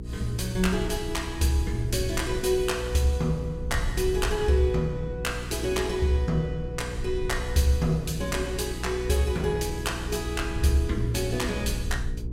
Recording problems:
hum; 60 Hz, harmonics up to 480 Hz, SNR 9 dB
wind noise; below 80 Hz, SNR 10 dB

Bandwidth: 16 kHz